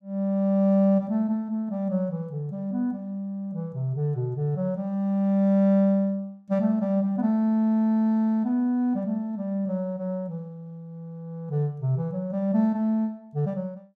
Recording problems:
none

